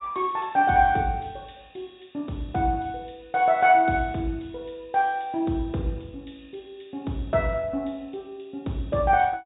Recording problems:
treble missing; nothing above 4 kHz

